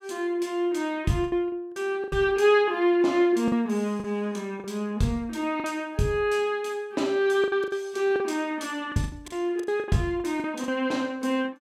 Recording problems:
packet loss; 9% of the sound replaced, filled with the last packet

